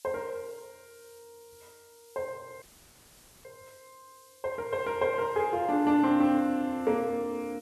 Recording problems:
hiss; SNR 28 dB
frozen audio; at 2.5 s for 1 s

